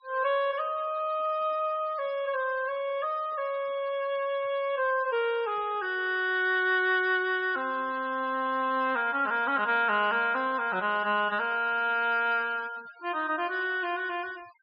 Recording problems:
treble cut off; nothing above 5.5 kHz
noise reduction artefacts; signal-to-artefact ratio 24 dB

